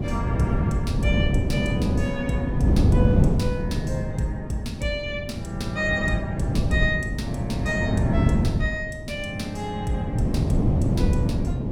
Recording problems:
wind on the microphone; below 210 Hz, SNR -4 dB

